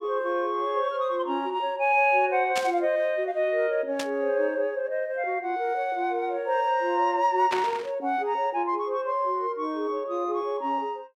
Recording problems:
burst of static; at 2.5 s, at 4 s and at 7.5 s; peak 0 dB vs average level

